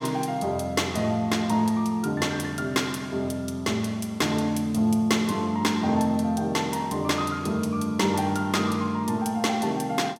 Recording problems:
none

